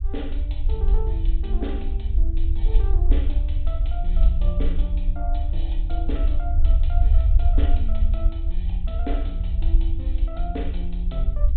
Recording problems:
low-pass filter; nothing above 4 kHz
rumble; below 58 Hz, SNR -12 dB

